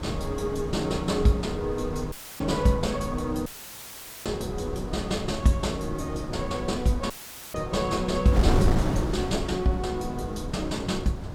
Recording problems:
wind noise; below 240 Hz, SNR 4 dB
audio cutting out; at 2 s, at 3.5 s for 1 s and at 7 s

